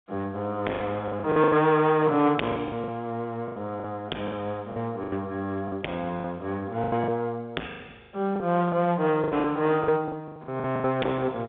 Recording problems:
telephone audio; 260 Hz to 3.6 kHz, G.711
distortion; hard clipping, signal-to-distortion ratio 12 dB
lost packets; 13% of the sound replaced, filled with the last packet

